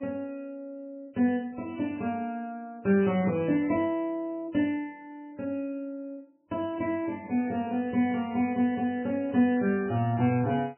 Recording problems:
lossy compression; MP3, log-spectral distance 2 dB, nothing above 2.4 kHz

